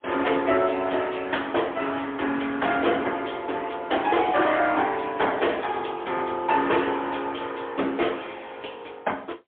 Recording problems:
phone line; 240 Hz to 3.5 kHz, AMR-NB, then MP3
distorted audio; soft clipping, signal-to-distortion ratio 11 dB

